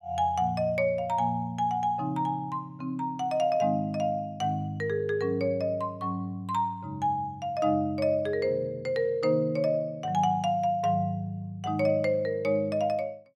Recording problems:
none

